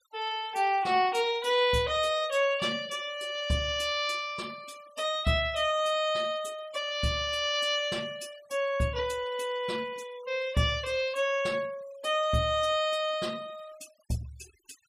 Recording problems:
noise reduction artefacts; signal-to-artefact ratio 21 dB

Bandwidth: 15 kHz